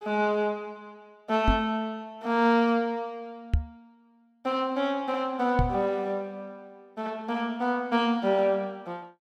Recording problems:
microphone thump; at 1.5 s, at 3.5 s and at 5.5 s; peak +6 dB vs average level

